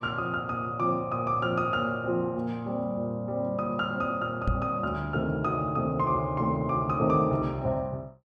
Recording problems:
knock on the microphone; at 4.5 s; peak +4 dB vs average level

